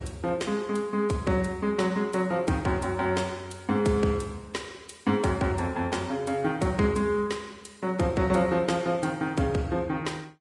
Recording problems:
lossy codec; Vorbis, log-spectral distance 3 dB, nothing above 10.4 kHz

